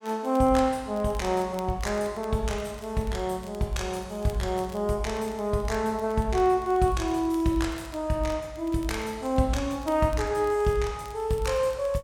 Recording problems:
crackle; vinyl, SNR 26 dB

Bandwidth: 17 kHz